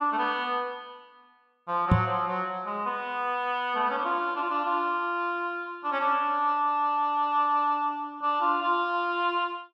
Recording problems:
microphone thump; at 2 s; peak +9 dB vs average level

